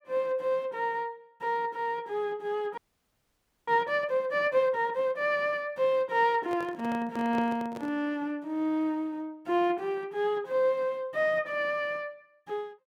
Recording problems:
frozen audio; at 3 s for 1 s
handling noise; from 6.5 to 8 s; peak -5 dB vs average level

